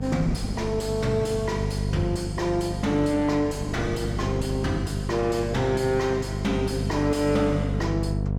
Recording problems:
distortion; soft clipping, signal-to-distortion ratio 11 dB
mains hum; 50 Hz, harmonics up to 700 Hz, SNR 4 dB
wind on the microphone; below 230 Hz, SNR 14 dB

